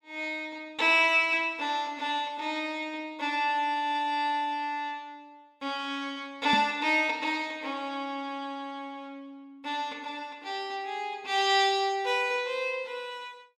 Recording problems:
microphone bump; at 6.5 s; peak +1 dB vs average level

